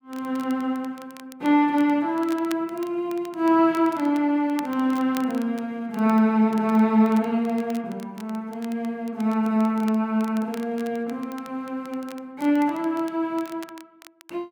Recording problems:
crackle; vinyl, SNR 24 dB

